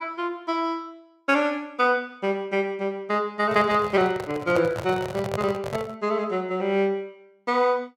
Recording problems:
handling noise; from 3.5 to 6 s; peak 0 dB vs average level

